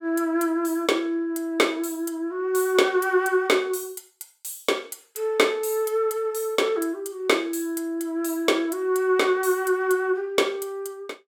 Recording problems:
none

